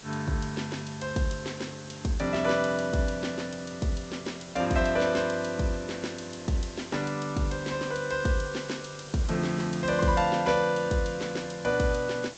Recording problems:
treble missing; nothing above 8 kHz
background hiss; SNR 17 dB

